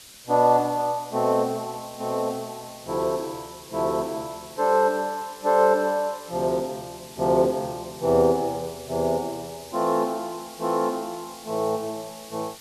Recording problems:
background hiss; SNR 18 dB

